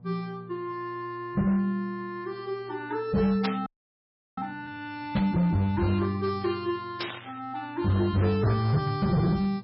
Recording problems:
codec artefacts; MP3, log-spectral distance 2 dB, nothing above 4.8 kHz
distortion; hard clipping, signal-to-distortion ratio 11 dB
hum; 60 Hz, harmonics up to 840 Hz, SNR 23 dB
burst of static; at 3.5 s, at 5 s and at 7 s; peak 0 dB vs average level
audio freezing; at 3.5 s for 0.5 s

